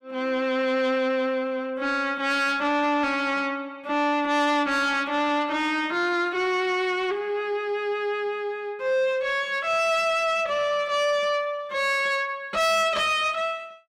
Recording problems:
distorted audio; soft clipping, signal-to-distortion ratio 10 dB

